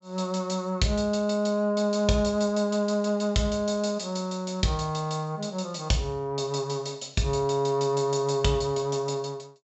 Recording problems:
treble missing; nothing above 7.8 kHz

